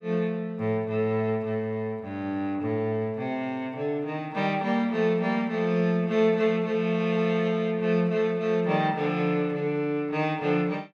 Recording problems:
none

